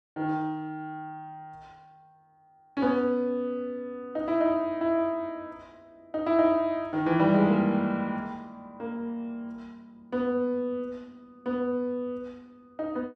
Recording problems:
none

